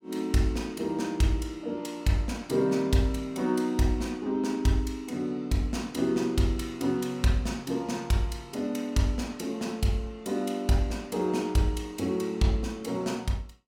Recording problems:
none

